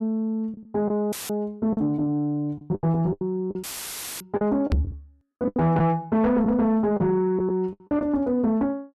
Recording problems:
distortion; soft clipping, signal-to-distortion ratio 11 dB
lost packets; 9% of the sound replaced, filled with the last packet
dropout; at 1 s and at 3.5 s for 0.5 s; filled with static
microphone thump; at 4.5 s; peak +4 dB vs average level

